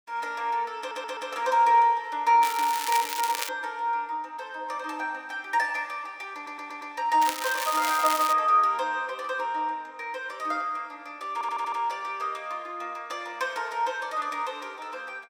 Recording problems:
stutter; at 1 s, at 6.5 s and at 11 s
crackling; from 2.5 to 3.5 s and from 7 to 8.5 s; loose cable, SNR 6 dB

